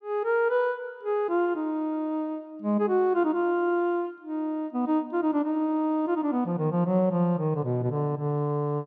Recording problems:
none

